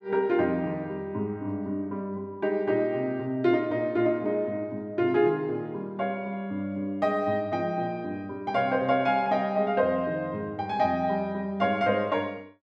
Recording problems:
none

